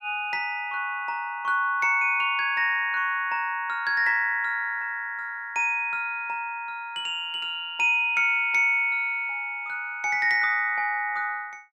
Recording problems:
none

